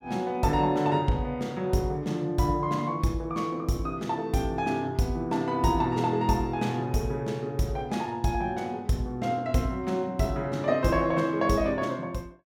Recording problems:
none

